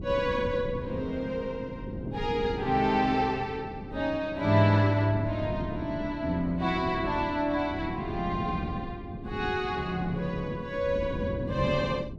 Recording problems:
wind on the microphone; below 280 Hz, SNR 9 dB

